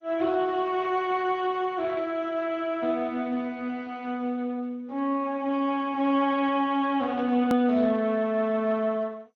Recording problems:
codec artefacts; Speex, then MP2, log-spectral distance 2 dB, nothing above 18.3 kHz
hard cut with a click; at 7.5 s

